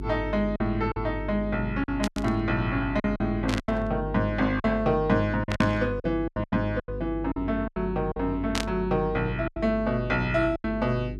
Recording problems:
mains hum; 50 Hz, harmonics up to 400 Hz, SNR 9 dB
lost packets; 10% of the sound replaced, filled with silence
static burst; 4 times, first at 2 s; peak +1 dB vs average level

